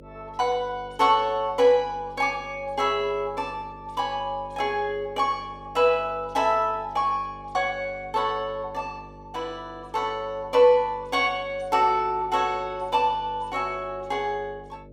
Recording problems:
hum; 50 Hz, harmonics up to 600 Hz, SNR 21 dB

